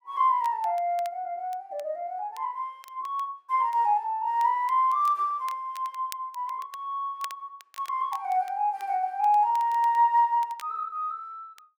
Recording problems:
crackling; vinyl, SNR 24 dB

